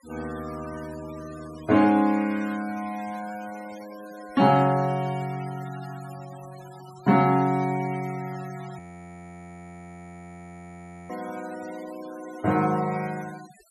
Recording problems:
noise reduction artefacts; signal-to-artefact ratio 21 dB
audio freezing; at 9 s for 2.5 s

